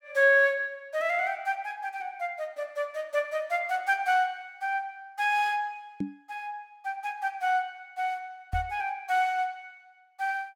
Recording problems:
microphone bump; at 6 s and at 8.5 s; peak +1 dB vs average level

